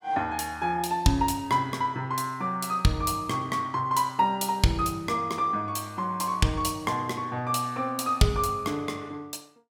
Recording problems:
none

